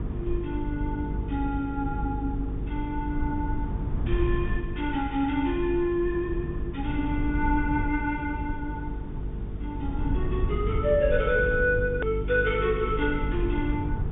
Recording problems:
treble missing; nothing above 3.6 kHz
hum; 50 Hz, harmonics up to 450 Hz, SNR 7 dB
hiss; SNR 27 dB
rumble; below 110 Hz, SNR 6 dB
hard cut with a click; at 12 s

